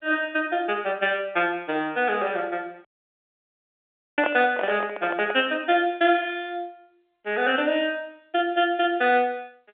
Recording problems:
phone line; 260 Hz to 3.4 kHz, G.711
dropout; at 3 s for 1.5 s
microphone handling noise; from 4 to 5.5 s; peak +1 dB vs average level

